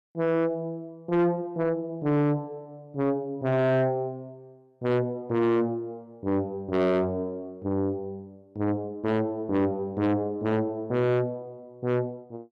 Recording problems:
distorted audio; soft clipping, signal-to-distortion ratio 7 dB

